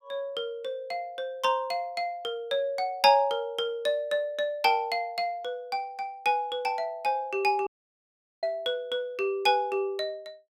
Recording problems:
audio cutting out; at 7.5 s for 1 s

